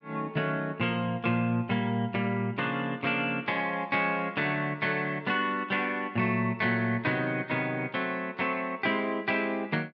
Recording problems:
none

